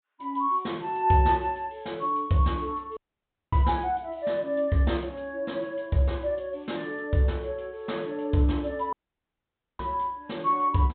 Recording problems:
treble cut off; nothing above 4 kHz
dropout; at 3 s for 0.5 s and at 9 s for 1 s

